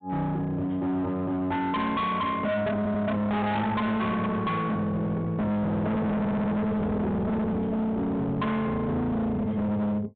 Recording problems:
treble missing; nothing above 4 kHz
distorted audio; hard clipping, signal-to-distortion ratio 6 dB
stutter; at 3 s and at 6 s

